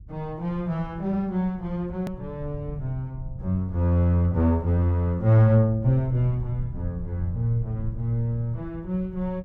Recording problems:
low-frequency rumble; below 100 Hz, SNR 15 dB
click at an edit; at 2 s

